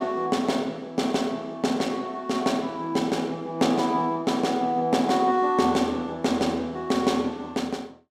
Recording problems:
none

